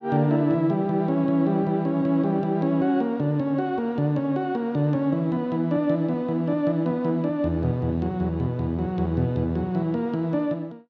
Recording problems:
none

